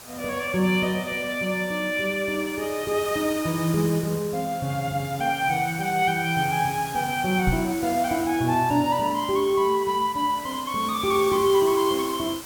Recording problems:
hiss; slope -2 dB per octave, SNR 14 dB
knock on the microphone; at 7.5 s; peak +2 dB vs average level

